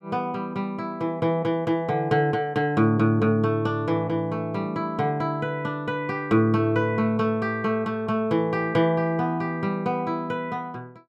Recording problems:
none

